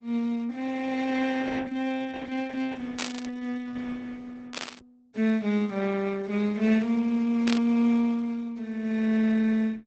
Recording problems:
lossy compression; Opus, log-spectral distance 3 dB, nothing above 8 kHz
static burst; at 3 s, at 4.5 s and at 7.5 s; peak +1 dB vs average level

